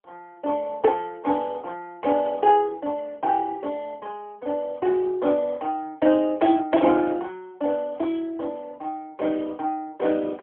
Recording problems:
telephone audio; 240 Hz to 3.5 kHz, AMR-NB

